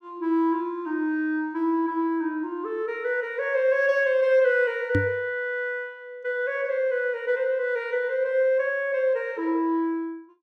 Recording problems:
microphone thump; at 5 s; peak +4 dB vs average level

